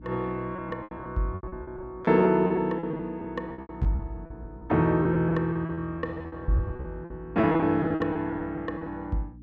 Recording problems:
hum; 60 Hz, harmonics up to 360 Hz, SNR 20 dB
lost packets; 16% of the sound replaced, filled with repeated pitch periods

